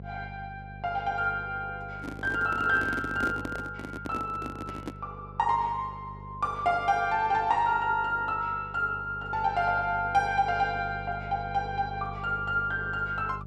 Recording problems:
electrical hum; 50 Hz, harmonics up to 650 Hz, SNR 15 dB
handling noise; from 2 to 5 s; peak -2 dB vs average level

